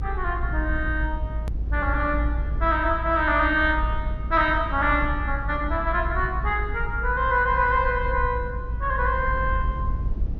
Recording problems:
codec artefacts; MP2, log-spectral distance 2 dB, nothing above 5.2 kHz
low-frequency rumble; below 64 Hz, strongest tone 54 Hz, SNR 5 dB
edit click; at 1.5 s

